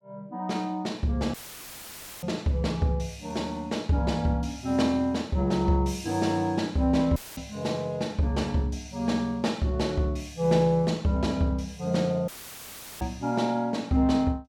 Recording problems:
audio cutting out; at 1.5 s for 1 s, at 7 s and at 12 s for 0.5 s; filled with static

